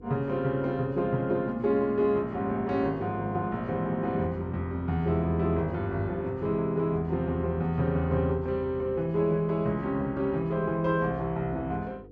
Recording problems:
hum; 50 Hz, harmonics up to 500 Hz, SNR 21 dB

